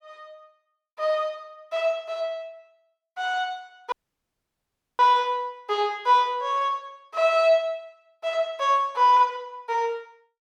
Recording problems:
dropout; at 4 s for 1 s

